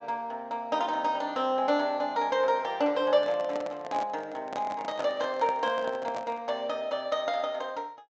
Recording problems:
low-pass filter; nothing above 8 kHz
handling noise; from 3 to 6.5 s; peak -3 dB vs average level

